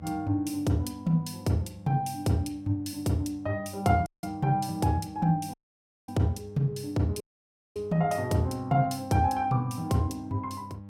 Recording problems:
hum; 50 Hz, harmonics up to 900 Hz, SNR 18 dB
audio cutting out; at 4 s, at 5.5 s for 0.5 s and at 7 s for 0.5 s

